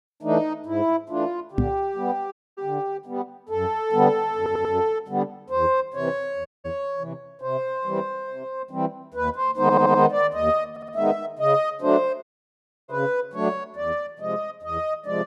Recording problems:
knock on the microphone; at 1.5 s; peak +6 dB vs average level
audio cutting out; at 2.5 s, at 6.5 s and at 12 s for 0.5 s
audio stuttering; at 4.5 s, at 9.5 s and at 11 s

